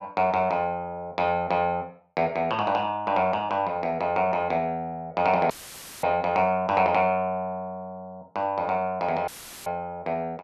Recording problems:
audio cutting out; at 5.5 s for 0.5 s and at 9.5 s; filled with static

